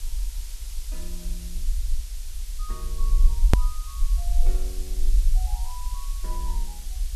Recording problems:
background hiss; SNR -2 dB
low-frequency rumble; below 44 Hz, strongest tone 24 Hz, SNR -16 dB
edit click; at 3.5 s

